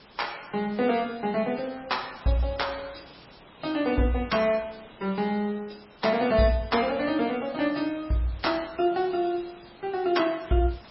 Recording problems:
codec artefacts; MP3, log-spectral distance 12 dB, nothing above 5.5 kHz
background hiss; slope -4 dB per octave, SNR 22 dB

